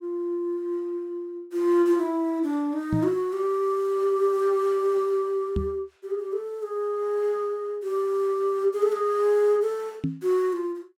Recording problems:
microphone thump; at 3 s, at 5.5 s and at 10 s; peak +2 dB vs average level

